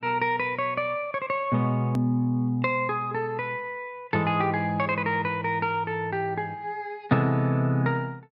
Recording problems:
click at an edit; at 2 s

